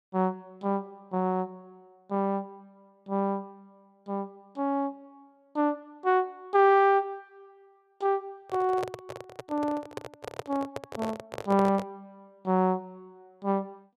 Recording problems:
microphone handling noise; from 8.5 to 12 s; peak -2 dB vs average level

